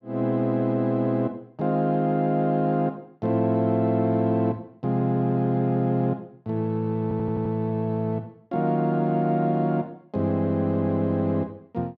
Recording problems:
stutter; at 7 s

